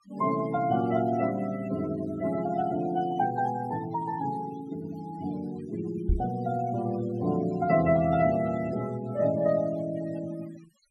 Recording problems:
noise reduction artefacts; signal-to-artefact ratio 17 dB
microphone thump; at 6 s; peak +5 dB vs average level

